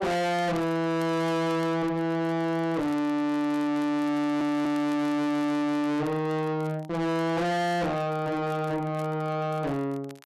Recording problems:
distorted audio; soft clipping, signal-to-distortion ratio 6 dB
crackling; vinyl, SNR 27 dB
stutter; at 4 s

